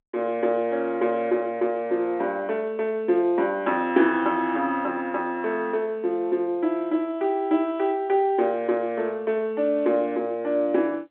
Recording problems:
phone line; 260 Hz to 3.7 kHz, G.711

